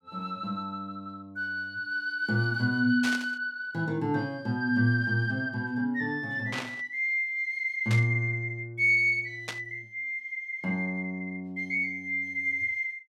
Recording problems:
burst of static; 4 times, first at 3 s; peak -2 dB vs average level

